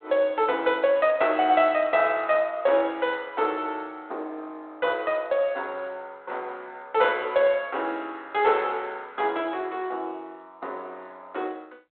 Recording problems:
telephone audio; 280 Hz to 3.7 kHz, G.726

